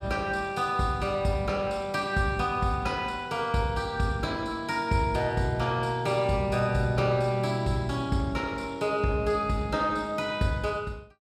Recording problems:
none

